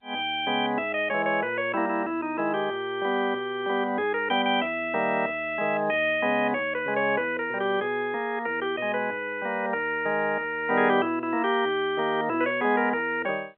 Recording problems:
telephone audio; 220 Hz to 3.3 kHz, G.711

